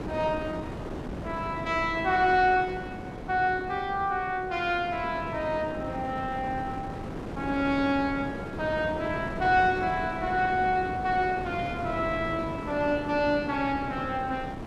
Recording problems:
wind on the microphone; below 570 Hz, SNR 9 dB

